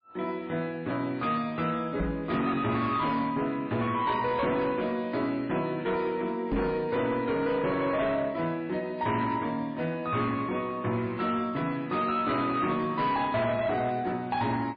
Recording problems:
codec artefacts; MP3, log-spectral distance 2 dB, nothing above 4.4 kHz
distorted audio; hard clipping, uneven, signal-to-distortion ratio 12 dB
microphone bump; at 2 s and at 6.5 s; peak +2 dB vs average level

